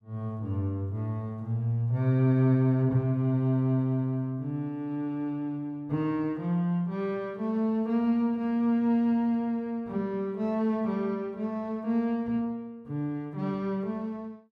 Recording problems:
none

